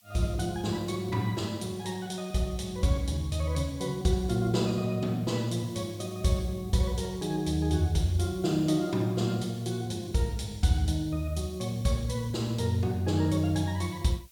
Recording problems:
hiss; SNR 27 dB

